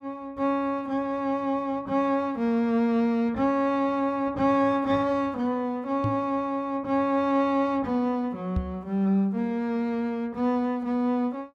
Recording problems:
microphone bump; at 6 s and at 8.5 s; peak +1 dB vs average level

